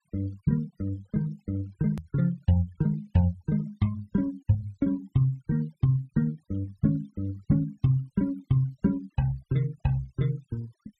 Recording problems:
denoising artefacts; signal-to-artefact ratio 27 dB
edit click; at 2 s

